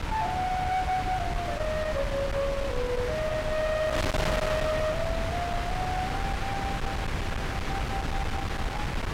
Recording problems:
distorted audio; hard clipping, signal-to-distortion ratio 6 dB
wind noise; below 1.2 kHz, SNR 1 dB

